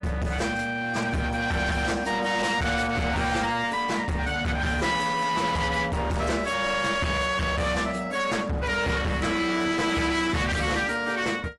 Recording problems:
lossy compression; AAC, log-spectral distance 4 dB, nothing above 11.3 kHz
distortion; hard clipping, uneven, signal-to-distortion ratio 6 dB

